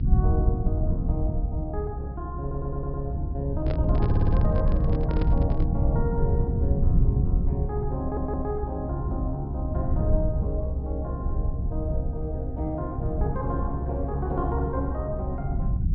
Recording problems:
low-pass filter; nothing above 5.2 kHz
rumble; below 110 Hz, SNR -4 dB
stutter; at 2.5 s, at 4 s and at 8 s
microphone handling noise; from 3.5 to 5.5 s; peak +1 dB vs average level

